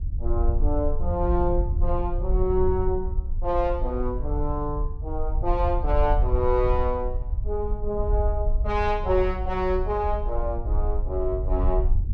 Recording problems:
wind noise; below 62 Hz, SNR 1 dB

